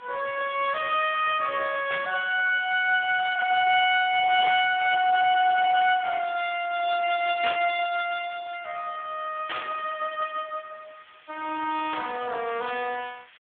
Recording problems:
phone line; 260 Hz to 3.6 kHz, Speex
background hiss; SNR 29 dB
burst of static; 5 times, first at 2 s; peak -3 dB vs average level

